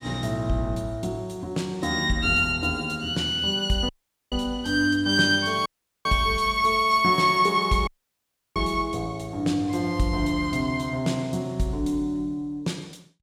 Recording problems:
dropout; at 4 s, at 5.5 s and at 8 s for 0.5 s

